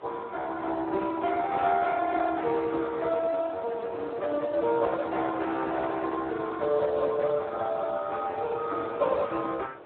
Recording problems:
telephone audio; 260 Hz to 2.7 kHz, Speex
wind on the microphone; below 920 Hz, SNR 14 dB

